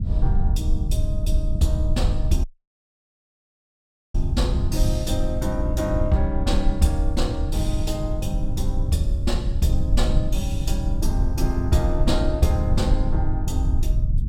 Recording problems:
low-frequency rumble; below 78 Hz, SNR -2 dB
audio cutting out; at 2.5 s for 1.5 s

